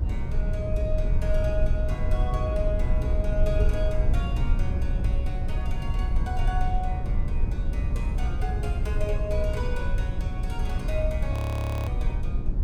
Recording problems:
hum; 60 Hz, harmonics up to 420 Hz, SNR 2 dB
low-frequency rumble; below 74 Hz, SNR -6 dB
audio freezing; at 11 s for 0.5 s

